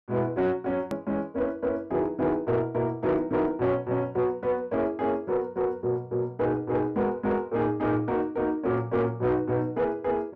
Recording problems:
distortion; soft clipping, signal-to-distortion ratio 11 dB
click at an edit; at 1 s

